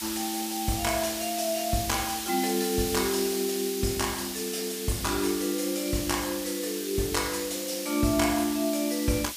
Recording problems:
background hiss; slope +4 dB per octave, SNR 5 dB

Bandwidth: 15 kHz